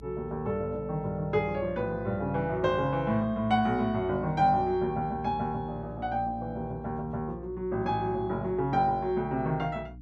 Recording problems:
hum; 60 Hz, harmonics up to 300 Hz, SNR 17 dB

